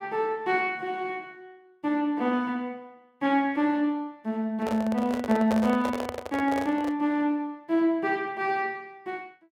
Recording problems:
microphone handling noise; from 4.5 to 7 s; peak +1 dB vs average level

